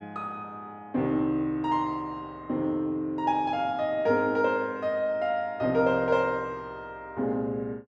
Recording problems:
none

